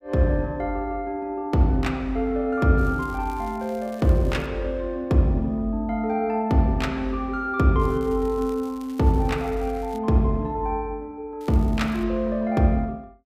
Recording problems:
crackle; from 3 to 4.5 s, from 8 to 10 s and at 11 s; loose cable, SNR 27 dB

